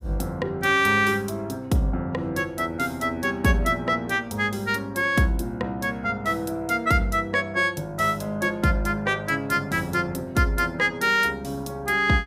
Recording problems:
none

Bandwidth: 15.5 kHz